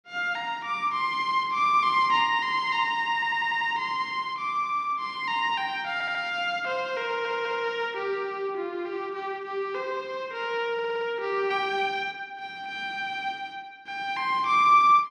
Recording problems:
audio stuttering; 4 times, first at 3 s

